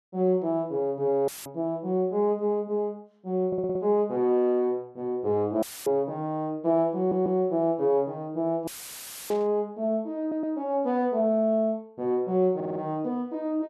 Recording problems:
audio cutting out; at 1.5 s, at 5.5 s and at 8.5 s for 0.5 s; filled with static
stutter; 4 times, first at 3.5 s
burst of static; at 9.5 s; peak -15 dB vs average level

